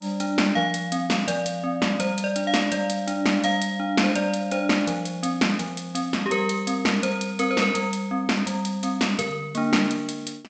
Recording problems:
codec artefacts; G.722, log-spectral distance 5 dB, nothing above 8 kHz

